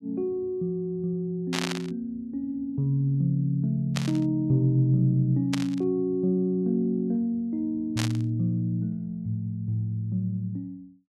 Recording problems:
burst of static; 4 times, first at 1.5 s; peak +1 dB vs average level

